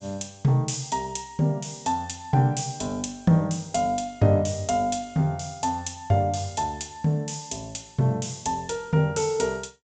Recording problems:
low-pass filter; nothing above 8 kHz

